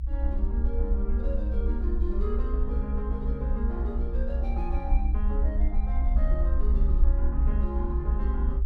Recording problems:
low-frequency rumble; below 62 Hz, SNR -8 dB

